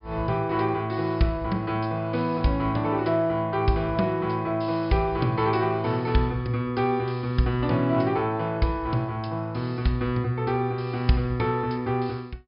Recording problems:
low-pass filter; nothing above 5.5 kHz

